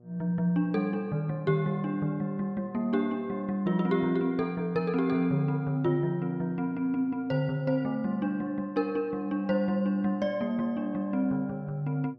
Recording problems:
electrical hum; 60 Hz, harmonics up to 720 Hz, SNR 27 dB

